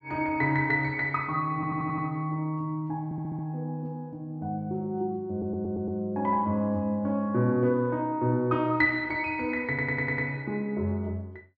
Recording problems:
audio stuttering; 4 times, first at 1.5 s

